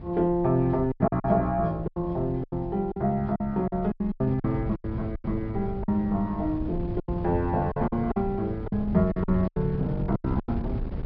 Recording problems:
treble cut off; nothing above 5.5 kHz
wind noise; below 190 Hz, SNR 9 dB
packet loss; 13% of the sound replaced, filled with silence

